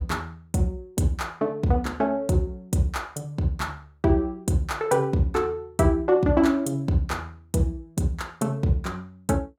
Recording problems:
none

